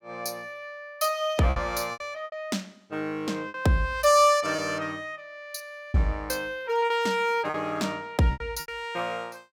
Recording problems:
packet loss; 7% of the sound replaced, filled with repeated pitch periods

